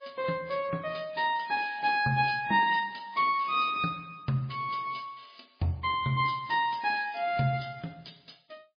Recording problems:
lossy compression; MP3, log-spectral distance 6 dB, nothing above 4.1 kHz

